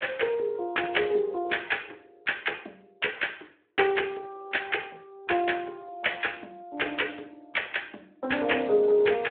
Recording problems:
telephone audio; 300 Hz to 3.5 kHz, Speex

